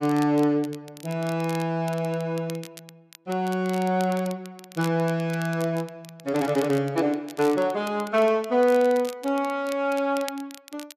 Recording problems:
crackle; vinyl, SNR 19 dB

